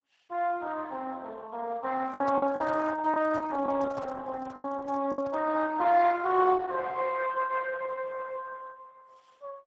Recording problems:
lossy compression; Speex, then Opus, log-spectral distance 4 dB
lost packets; 4% of the sound replaced, filled with the last packet
microphone handling noise; from 2 to 5.5 s; peak -9 dB vs average level

